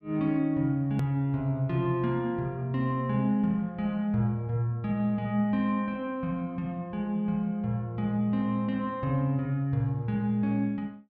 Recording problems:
edit click; at 1 s

